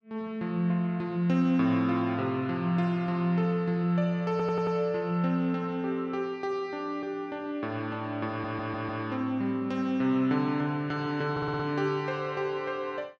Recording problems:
stutter; at 4.5 s, at 8.5 s and at 11 s

